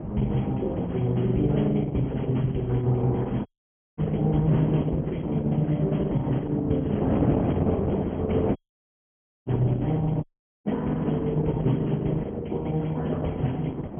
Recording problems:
low-pass filter; nothing above 3.3 kHz
lossy codec; Opus, log-spectral distance 3 dB
wind on the microphone; below 410 Hz, SNR 7 dB
audio cutting out; at 3.5 s for 0.5 s, at 8.5 s for 1 s and at 10 s

